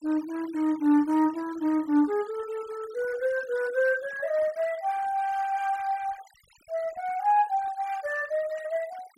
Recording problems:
noise reduction artefacts; signal-to-artefact ratio 21 dB

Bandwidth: 16 kHz